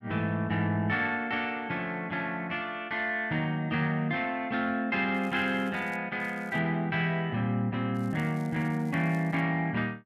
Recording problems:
crackle; at 5 s, at 6 s and from 8 to 9.5 s; loose cable, SNR 29 dB

